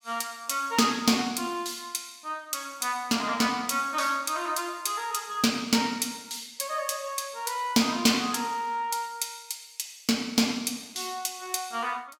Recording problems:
none

